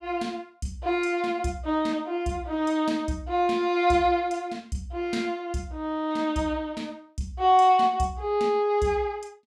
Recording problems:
none

